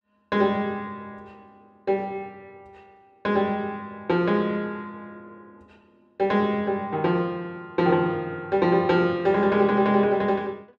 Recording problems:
none

